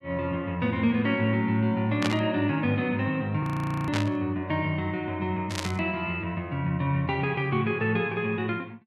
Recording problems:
static burst; at 2 s, at 4 s and at 5.5 s; peak +2 dB vs average level
frozen audio; at 3.5 s

